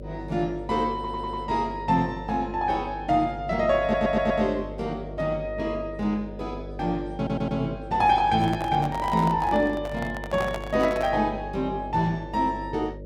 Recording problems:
hum; 50 Hz, harmonics up to 600 Hz, SNR 13 dB
audio stuttering; at 1 s, at 4 s and at 7 s
microphone handling noise; from 8.5 to 11 s; peak -3 dB vs average level

